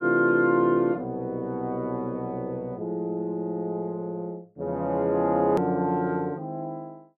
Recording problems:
hard cut with a click; at 5.5 s

